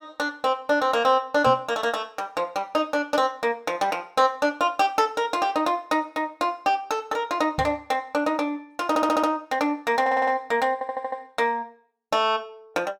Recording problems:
knock on the microphone; at 1.5 s and at 7.5 s; peak -2 dB vs average level
stutter; at 9 s, at 10 s and at 11 s

